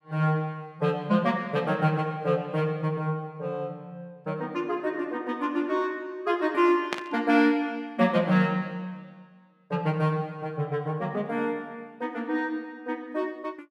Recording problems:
static burst; at 7 s; peak +1 dB vs average level

